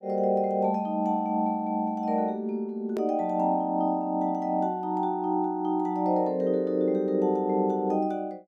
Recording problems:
hard cut with a click; at 3 s

